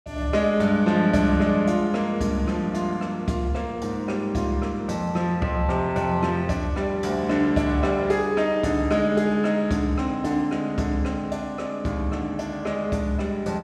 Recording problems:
none

